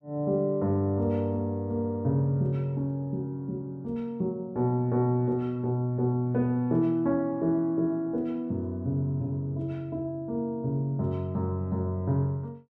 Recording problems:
none

